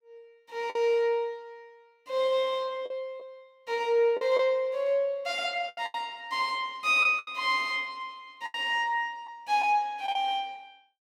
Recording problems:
packet loss; 6% of the sound replaced, filled with the last packet

